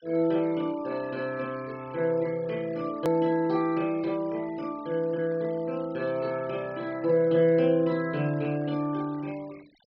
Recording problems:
treble cut off; nothing above 5.5 kHz
denoising artefacts; signal-to-artefact ratio 24 dB
edit click; at 3 s

